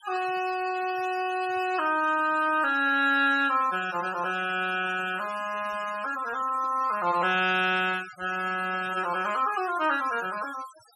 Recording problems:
noise reduction artefacts; signal-to-artefact ratio 17 dB

